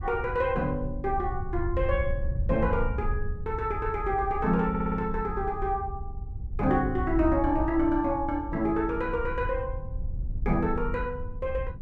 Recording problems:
wind noise; below 78 Hz, SNR 7 dB
audio stuttering; at 4.5 s

